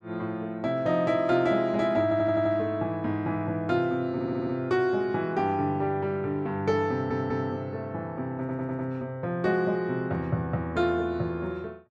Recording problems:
stutter; 4 times, first at 2 s

